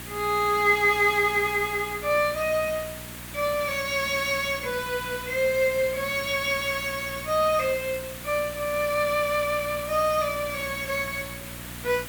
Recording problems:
electrical hum; 60 Hz, harmonics up to 900 Hz, SNR 18 dB
hiss; SNR 12 dB

